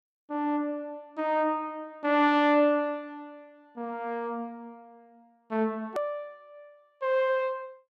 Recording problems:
click at an edit; at 6 s

